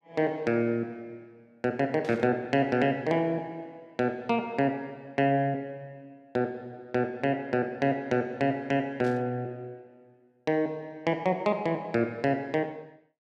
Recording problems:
static burst; at 2 s and at 9 s; peak -15 dB vs average level

